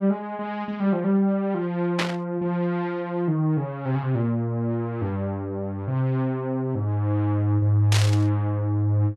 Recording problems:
static burst; at 2 s and at 8 s; peak +3 dB vs average level

